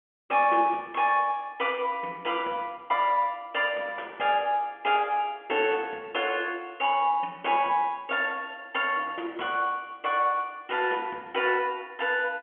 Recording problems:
telephone audio; 260 Hz to 3.3 kHz, G.711

